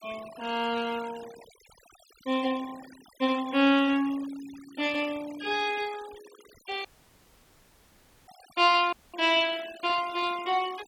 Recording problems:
denoising artefacts; signal-to-artefact ratio 19 dB
dropout; at 7 s for 1.5 s and at 9 s

